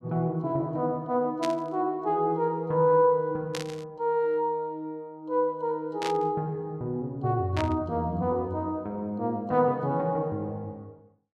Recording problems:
static burst; 4 times, first at 1.5 s; peak -2 dB vs average level

